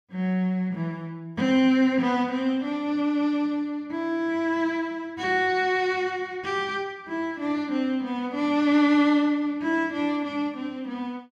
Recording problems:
none

